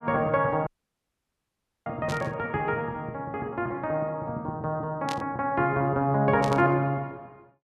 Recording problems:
audio cutting out; at 0.5 s for 1 s
burst of static; at 2 s, at 5 s and at 6.5 s; peak -5 dB vs average level

